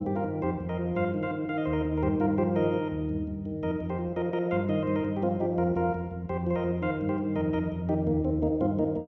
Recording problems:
none

